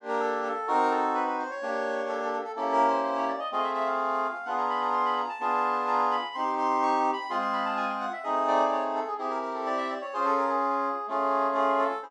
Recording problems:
none

